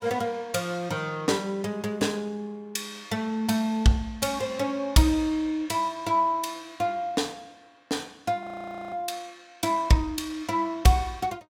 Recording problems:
audio freezing; at 8.5 s

